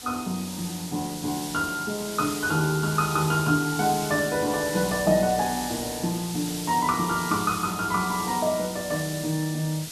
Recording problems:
background hiss; slope +2 dB per octave, SNR 8 dB

